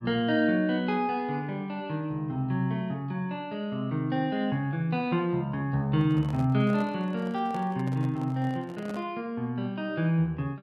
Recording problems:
microphone handling noise; from 6 to 9 s; peak -9 dB vs average level

